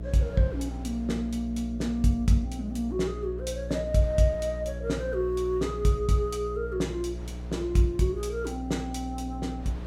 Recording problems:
hum; 60 Hz, harmonics up to 660 Hz, SNR 8 dB
wind noise; below 1 kHz, SNR 26 dB

